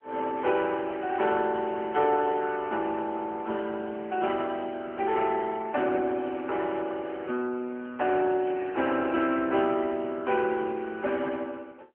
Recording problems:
phone line; 240 Hz to 3.1 kHz, AMR-NB

